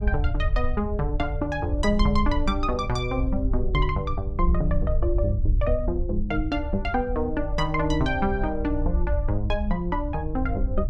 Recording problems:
low-frequency rumble; below 66 Hz, SNR 2 dB

